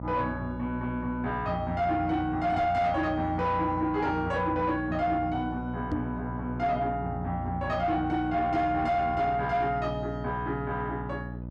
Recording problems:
distorted audio; soft clipping, signal-to-distortion ratio 11 dB
hum; 60 Hz, harmonics up to 660 Hz, SNR 9 dB
microphone thump; at 6 s; peak +1 dB vs average level

